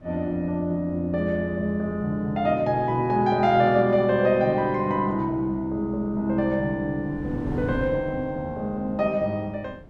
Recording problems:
wind on the microphone; below 290 Hz, SNR 17 dB

